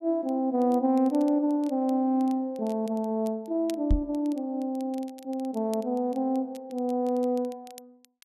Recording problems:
crackling; vinyl, SNR 26 dB
microphone bump; at 4 s; peak +6 dB vs average level

